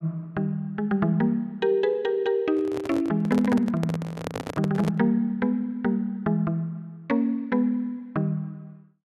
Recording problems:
handling noise; from 2.5 to 5 s; peak -2 dB vs average level

